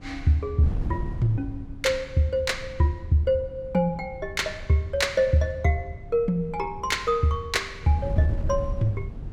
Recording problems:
wind on the microphone; below 120 Hz, SNR 11 dB

